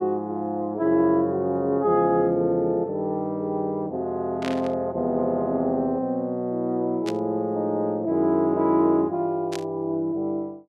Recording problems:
static burst; at 4.5 s, at 7 s and at 9.5 s; peak -6 dB vs average level

